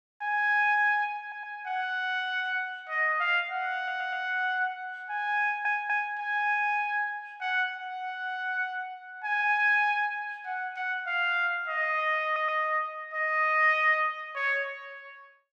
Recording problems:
audio stuttering; 4 times, first at 1 s

